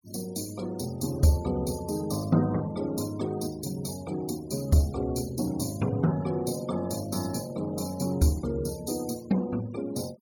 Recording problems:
noise reduction artefacts; signal-to-artefact ratio 19 dB

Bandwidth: 18 kHz